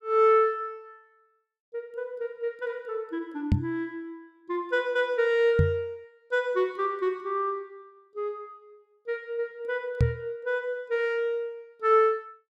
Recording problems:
microphone bump; at 3.5 s, at 5.5 s and at 10 s; peak +8 dB vs average level

